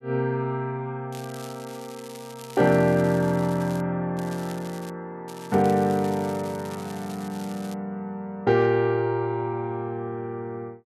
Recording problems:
crackle; from 1 to 4 s, at 4 s and from 5.5 to 7.5 s; loose cable, SNR 20 dB

